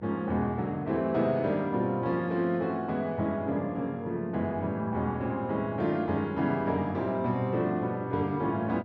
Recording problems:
hum; 50 Hz, harmonics up to 900 Hz, SNR 19 dB

